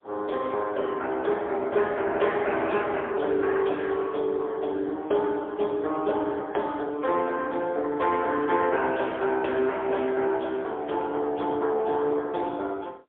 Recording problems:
telephone audio; 300 Hz to 3.4 kHz, AMR-NB, then MP3

